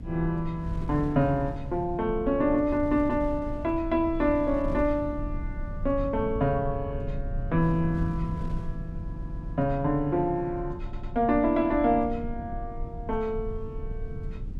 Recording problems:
low-frequency rumble; below 100 Hz, SNR 11 dB
wind on the microphone; below 130 Hz, SNR 15 dB
audio stuttering; at 9 s and at 11 s

